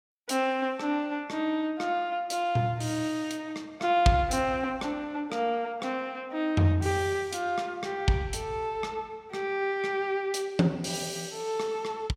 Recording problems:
none

